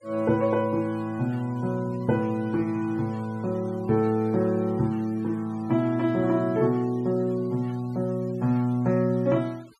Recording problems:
noise reduction artefacts; signal-to-artefact ratio 26 dB

